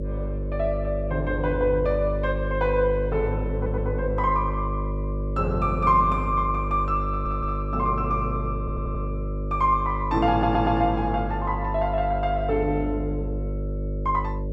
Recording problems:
electrical hum; 50 Hz, harmonics up to 600 Hz, SNR 4 dB
stutter; 4 times, first at 3.5 s

